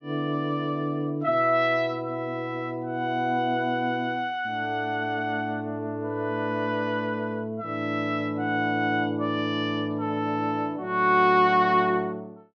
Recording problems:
treble missing; nothing above 6.5 kHz

